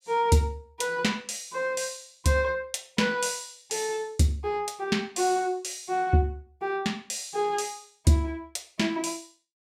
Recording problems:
none

